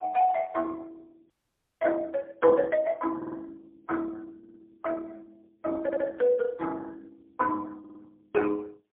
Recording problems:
phone line; 300 Hz to 2.1 kHz, AMR-NB, then MP3
audio freezing; at 1.5 s for 0.5 s
audio stuttering; 4 times, first at 3 s

